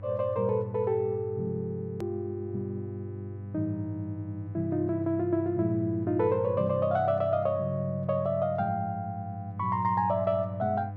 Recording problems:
electrical hum; 50 Hz, harmonics up to 500 Hz, SNR 11 dB
edit click; at 2 s

